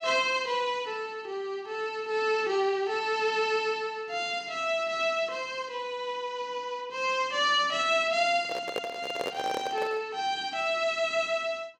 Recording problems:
microphone handling noise; from 8.5 to 10 s; peak 0 dB vs average level

